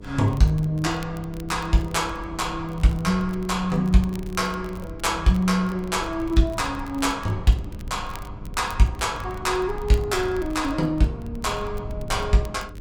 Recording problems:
hum; 50 Hz, harmonics up to 1.1 kHz, SNR 20 dB
rumble; below 110 Hz, SNR 14 dB
crackling; vinyl, SNR 25 dB

